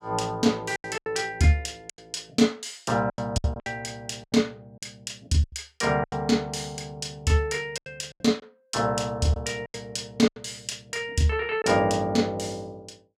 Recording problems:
packet loss; 9% of the sound replaced, filled with silence

